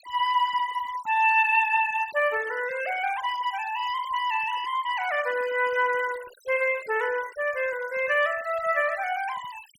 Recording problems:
noise reduction artefacts; signal-to-artefact ratio 18 dB

